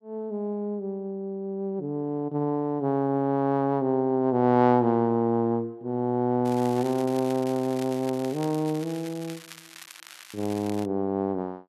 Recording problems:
crackle; from 6.5 to 11 s; loose cable, SNR 18 dB

